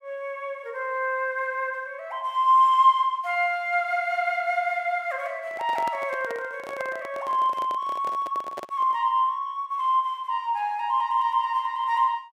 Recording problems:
microphone handling noise; from 5.5 to 9 s; peak -7 dB vs average level

